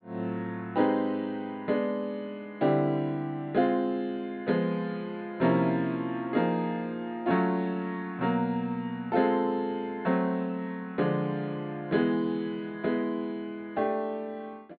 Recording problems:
low-pass filter; nothing above 4.4 kHz

